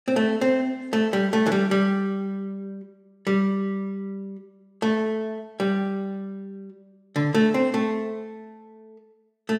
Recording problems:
none

